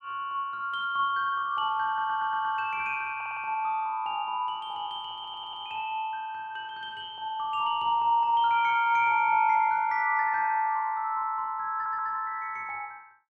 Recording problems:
stutter; 4 times, first at 2 s

